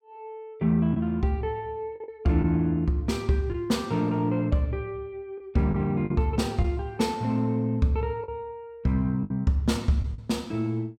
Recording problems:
packet loss; 4% of the sound replaced, filled with the last packet

